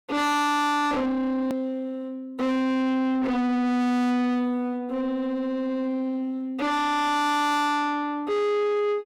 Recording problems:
distorted audio; soft clipping, signal-to-distortion ratio 6 dB
edit click; at 1.5 s

